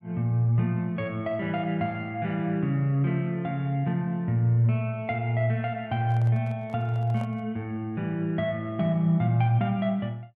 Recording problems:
handling noise; from 6 to 7.5 s; peak -11 dB vs average level

